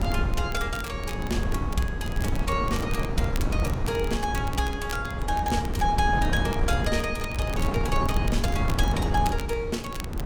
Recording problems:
electrical hum; 60 Hz, harmonics up to 1.6 kHz, SNR 16 dB
wind on the microphone; below 190 Hz, SNR 0 dB
crackle; vinyl, SNR 14 dB

